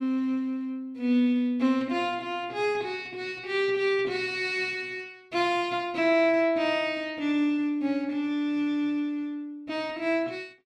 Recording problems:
none

